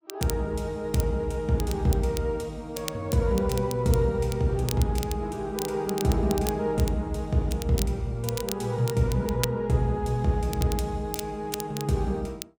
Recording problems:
crackling; vinyl, SNR 12 dB

